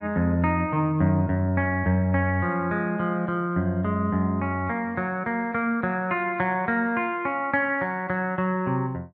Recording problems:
none

